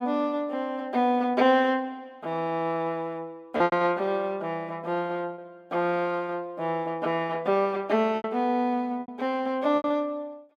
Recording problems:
lost packets; 4% of the sound replaced, filled with repeated pitch periods

